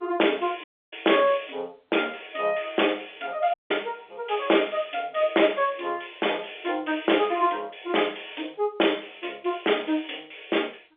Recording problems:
telephone audio; 260 Hz to 3.6 kHz, G.711
distorted audio; hard clipping, uneven, signal-to-distortion ratio 13 dB
audio cutting out; at 0.5 s and at 3.5 s

